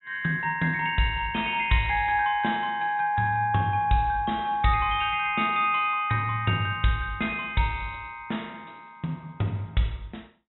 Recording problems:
treble cut off; nothing above 3.9 kHz

